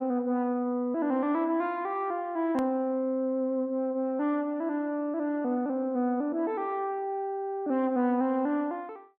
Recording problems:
edit click; at 2.5 s

